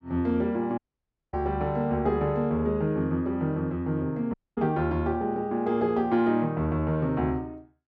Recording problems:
audio cutting out; at 1 s for 0.5 s and at 4.5 s

